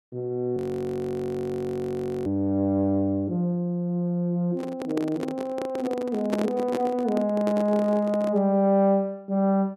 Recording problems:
audio freezing; at 0.5 s for 1.5 s
handling noise; from 4.5 to 8.5 s; peak +1 dB vs average level

